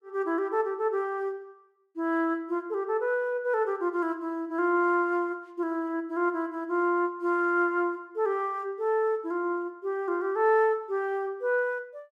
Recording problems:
none

